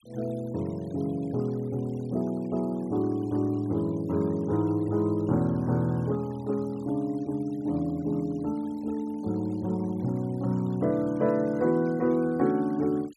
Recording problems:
denoising artefacts; signal-to-artefact ratio 26 dB

